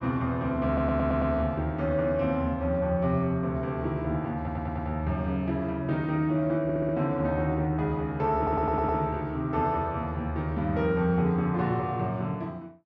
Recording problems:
audio stuttering; 4 times, first at 0.5 s

